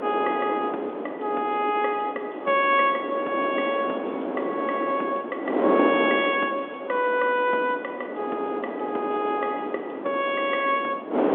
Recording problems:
telephone audio; 220 Hz to 3.6 kHz, G.711
wind noise; below 680 Hz, SNR 4 dB

